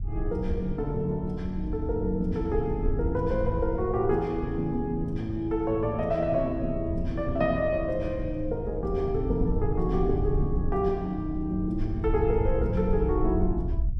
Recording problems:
low-frequency rumble; below 80 Hz, SNR 6 dB

